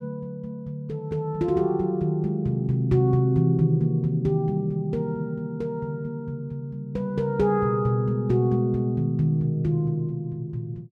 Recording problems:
none

